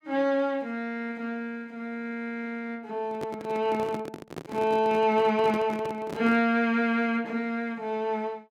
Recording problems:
handling noise; from 3 to 6.5 s; peak -5 dB vs average level

